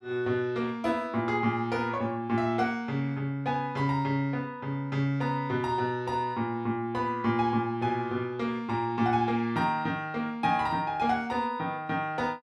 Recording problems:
none

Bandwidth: 14.5 kHz